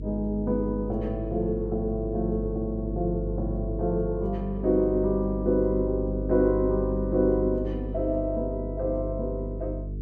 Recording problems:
hum; 50 Hz, harmonics up to 450 Hz, SNR 6 dB

